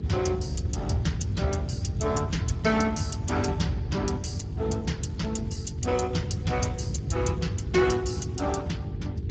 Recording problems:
lossy codec; Speex, log-spectral distance 3 dB, nothing above 7.3 kHz
hum; 50 Hz, harmonics up to 450 Hz, SNR 11 dB
rumble; below 140 Hz, SNR 2 dB

